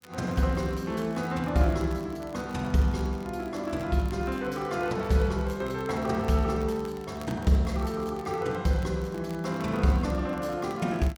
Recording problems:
crackle; vinyl, SNR 25 dB

